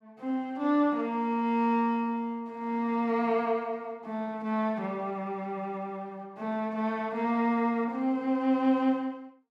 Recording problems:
none

